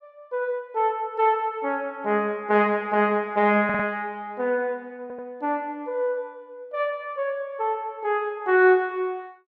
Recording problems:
audio stuttering; at 3.5 s and at 5 s

